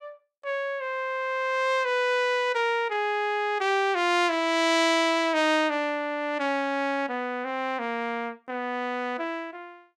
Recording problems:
none

